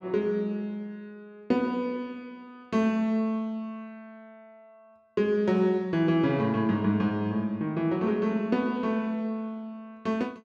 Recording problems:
none

